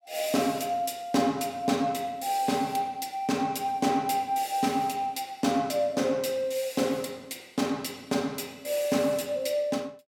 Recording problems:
none

